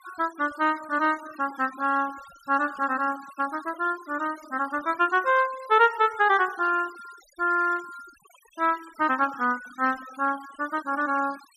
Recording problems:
denoising artefacts; signal-to-artefact ratio 21 dB

